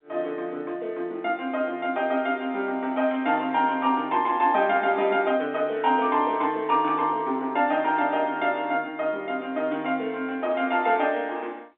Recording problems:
phone line; 220 Hz to 3.8 kHz, G.711

